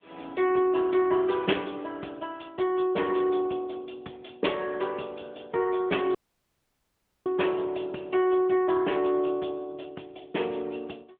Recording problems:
telephone audio; 260 Hz to 3.4 kHz, AMR-NB
dropout; at 6 s for 1 s

